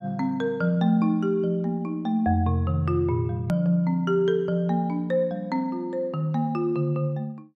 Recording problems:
hard cut with a click; at 3.5 s

